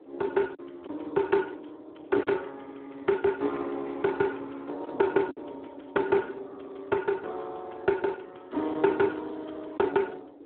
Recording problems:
phone line; 240 Hz to 2.5 kHz, Speex
wind on the microphone; below 460 Hz, SNR 18 dB
lost packets; 1.8% of the sound replaced, filled with silence

